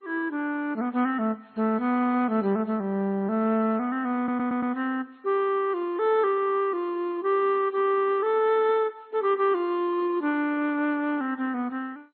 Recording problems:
lossy codec; MP3, then MP2, log-spectral distance 2 dB, nothing above 3.6 kHz
stutter; at 4 s

